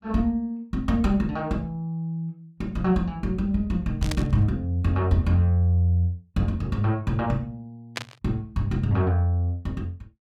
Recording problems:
burst of static; at 4 s and at 8 s; peak 0 dB vs average level

